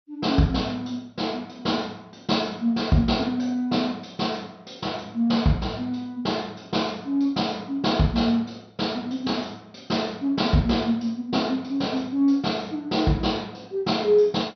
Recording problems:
lossy codec; MP2, log-spectral distance 4 dB, nothing above 5 kHz

